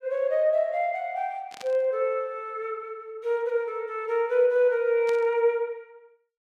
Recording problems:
static burst; at 1.5 s and at 5 s; peak -11 dB vs average level

